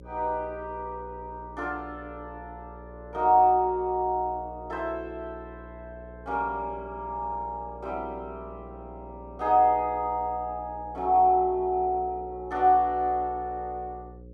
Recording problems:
electrical hum; 60 Hz, harmonics up to 540 Hz, SNR 20 dB

